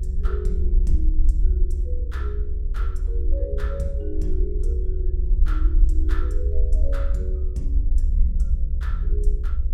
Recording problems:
hum; 50 Hz, harmonics up to 550 Hz, SNR 16 dB
rumble; below 62 Hz, SNR -12 dB

